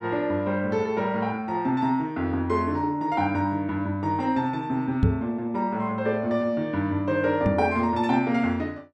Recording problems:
knock on the microphone; at 5 s and at 7.5 s; peak +7 dB vs average level

